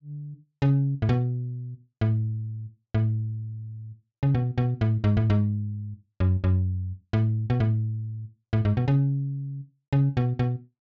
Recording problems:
treble missing; nothing above 8 kHz

